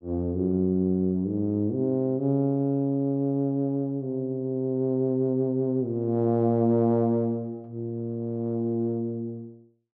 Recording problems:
none

